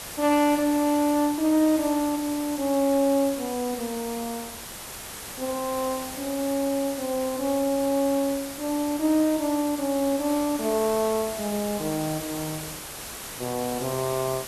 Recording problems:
hiss; slope -2 dB per octave, SNR 10 dB

